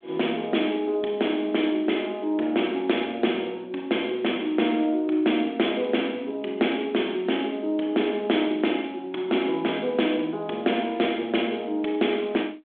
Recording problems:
telephone audio; 220 Hz to 3.5 kHz, G.726

